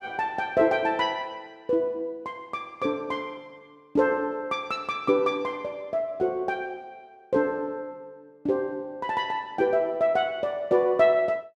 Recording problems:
none

